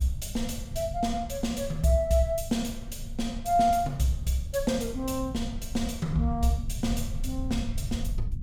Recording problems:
low-frequency rumble; below 90 Hz, strongest tone 22 Hz, SNR 9 dB

